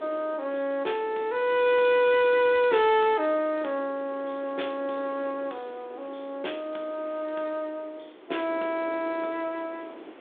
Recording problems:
telephone audio; 280 Hz to 3.6 kHz, G.726
background hiss; SNR 29 dB
wind noise; below 600 Hz, SNR 19 dB

